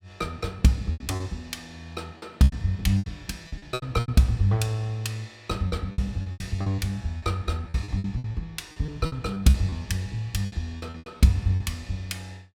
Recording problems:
lost packets; 13% of the sound replaced, filled with repeated pitch periods

